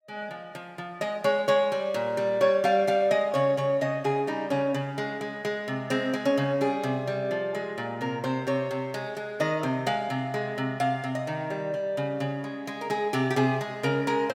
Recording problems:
none

